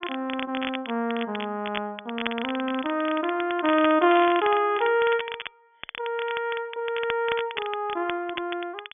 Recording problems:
low-pass filter; nothing above 3.4 kHz
crackle; vinyl, SNR 10 dB

